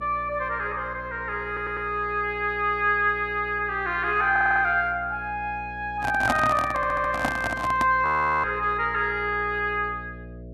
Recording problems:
mains hum; 60 Hz, harmonics up to 660 Hz, SNR 18 dB
stutter; at 1.5 s, at 4.5 s and at 7 s
handling noise; from 6 to 8 s; peak +4 dB vs average level
audio freezing; at 8 s

